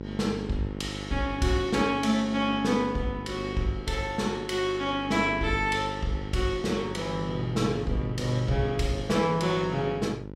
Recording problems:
electrical hum; 50 Hz, harmonics up to 1 kHz, SNR 10 dB

